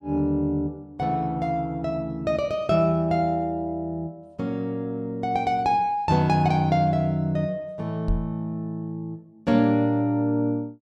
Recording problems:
microphone thump; at 8 s; peak +1 dB vs average level

